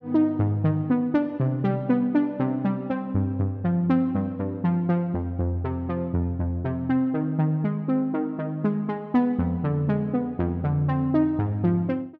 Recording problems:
none

